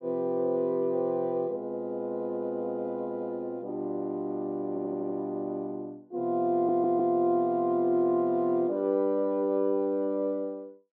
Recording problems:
audio stuttering; at 4.5 s and at 6.5 s

